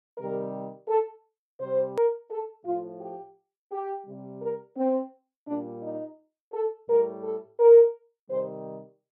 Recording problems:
edit click; at 2 s

